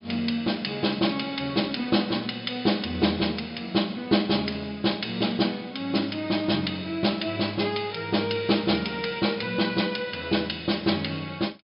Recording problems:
treble missing; nothing above 5.2 kHz

